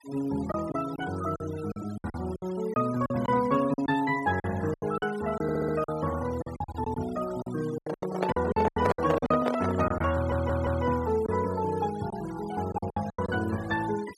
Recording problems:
denoising artefacts; signal-to-artefact ratio 16 dB
packet loss; 12% of the sound replaced, filled with silence
audio stuttering; at 5.5 s and at 10 s
handling noise; from 8 to 10 s; peak +4 dB vs average level

